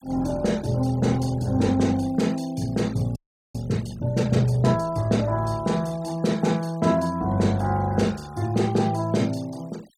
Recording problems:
denoising artefacts; signal-to-artefact ratio 24 dB
frozen audio; at 3 s

